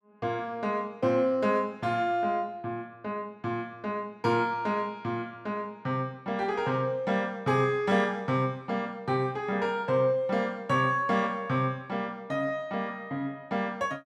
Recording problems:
none

